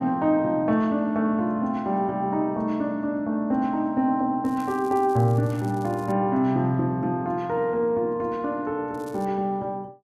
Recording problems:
crackling; from 4.5 to 6 s and at 9 s; loose cable, SNR 27 dB

